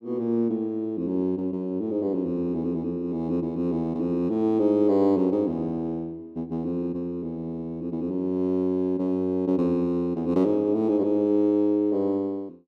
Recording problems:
none

